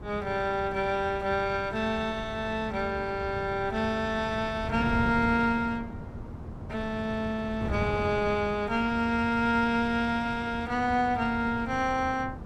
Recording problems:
wind noise; below 250 Hz, SNR 11 dB

